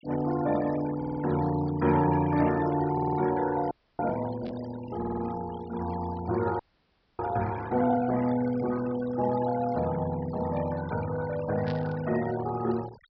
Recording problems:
treble missing; nothing above 5.5 kHz
denoising artefacts; signal-to-artefact ratio 14 dB
audio stuttering; at 1 s, at 3 s and at 5 s
frozen audio; at 3.5 s and at 6.5 s for 0.5 s
static burst; at 4.5 s and at 12 s; peak -11 dB vs average level

